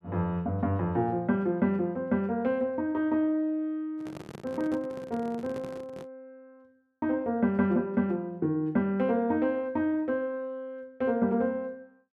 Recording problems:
microphone handling noise; from 4 to 6 s; peak -9 dB vs average level

